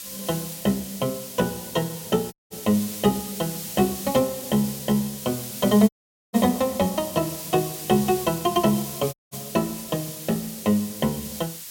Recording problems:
background hiss; SNR 9 dB
audio cutting out; at 2.5 s, at 6 s and at 9 s

